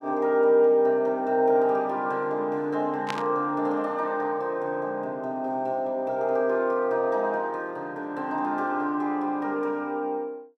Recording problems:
burst of static; at 3 s; peak -2 dB vs average level

